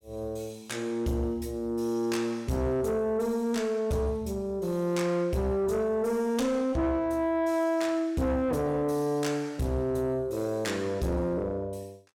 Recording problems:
distorted audio; soft clipping, signal-to-distortion ratio 11 dB

